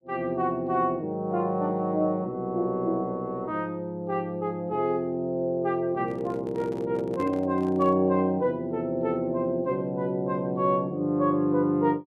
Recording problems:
handling noise; from 6 to 8 s; peak -9 dB vs average level

